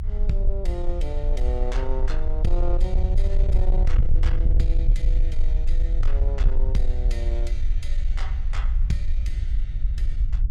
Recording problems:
distortion; soft clipping, signal-to-distortion ratio 11 dB
rumble; below 50 Hz, strongest tone 22 Hz, SNR -8 dB

